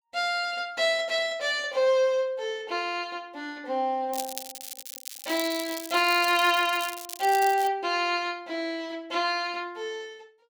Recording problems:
crackle; from 4 to 7.5 s; loose cable, SNR 11 dB

